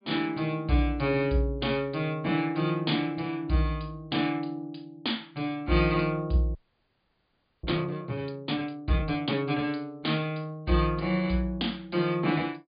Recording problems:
treble cut off; nothing above 4.9 kHz
frozen audio; at 6.5 s for 1 s

